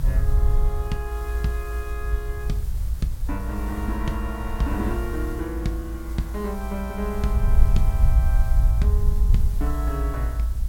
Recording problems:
background hiss; slope -3 dB per octave, SNR 15 dB
low-frequency rumble; below 62 Hz, SNR -5 dB

